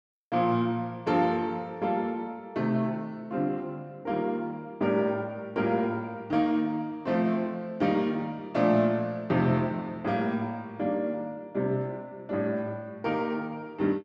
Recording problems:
none

